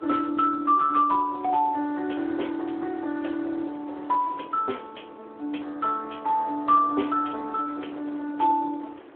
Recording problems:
telephone audio; 240 Hz to 3.4 kHz, Speex
wind on the microphone; below 1 kHz, SNR 21 dB

